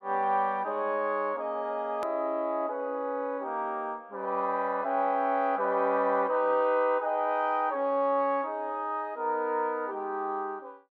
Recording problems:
hard cut with a click; at 2 s

